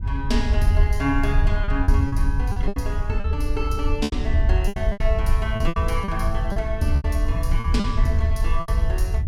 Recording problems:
low-frequency rumble; below 70 Hz, SNR -2 dB
packet loss; 10% of the sound replaced, filled with repeated pitch periods

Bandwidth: 16.5 kHz